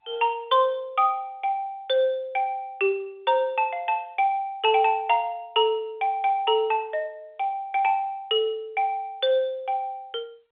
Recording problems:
telephone audio; 340 Hz to 3.6 kHz, G.711

